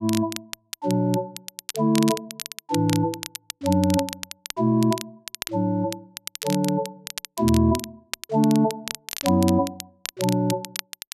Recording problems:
crackling; vinyl, SNR 11 dB

